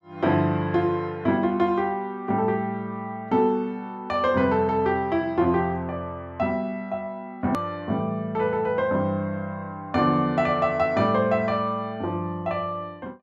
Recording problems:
click at an edit; at 7.5 s

